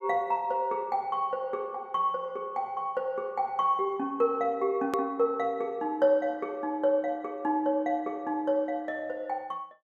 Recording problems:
edit click; at 5 s

